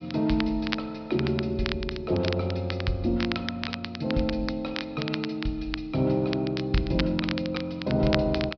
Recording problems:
treble cut off; nothing above 5.5 kHz
crackle; vinyl, SNR 8 dB

